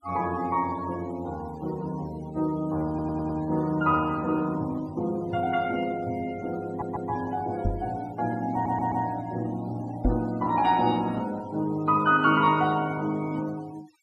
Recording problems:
denoising artefacts; signal-to-artefact ratio 21 dB
stutter; at 3 s, at 6.5 s and at 8.5 s
microphone bump; at 7.5 s and at 10 s; peak +5 dB vs average level

